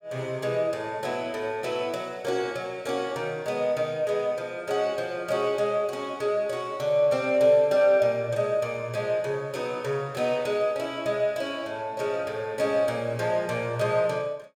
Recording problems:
none

